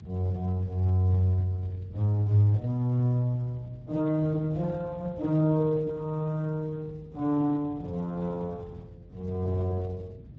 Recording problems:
codec artefacts; Speex, log-spectral distance 2 dB
low-frequency rumble; below 180 Hz, SNR 19 dB

